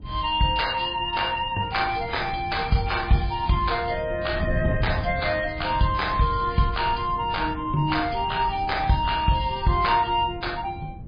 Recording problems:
lossy compression; MP3, log-spectral distance 6 dB
wind noise; below 160 Hz, SNR 11 dB

